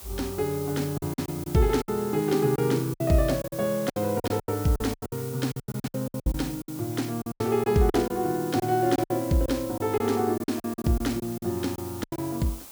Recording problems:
background hiss; SNR 14 dB
lost packets; 15% of the sound replaced, filled with silence

